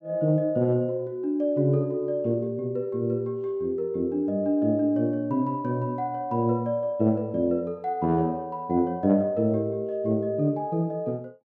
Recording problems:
none

